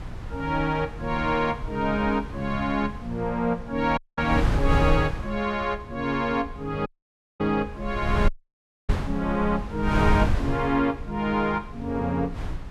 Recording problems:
wind on the microphone; below 140 Hz, SNR 5 dB
audio cutting out; at 4 s, at 7 s for 0.5 s and at 8.5 s for 0.5 s

